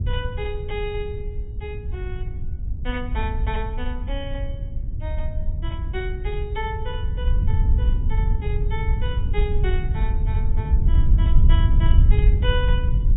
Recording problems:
treble missing; nothing above 4 kHz
rumble; below 76 Hz, SNR -9 dB

